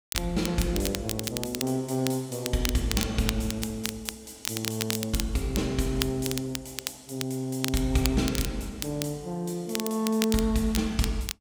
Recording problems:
crackle; vinyl, SNR 6 dB

